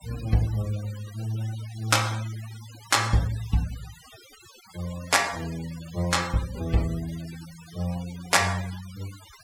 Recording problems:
noise reduction artefacts; signal-to-artefact ratio 16 dB

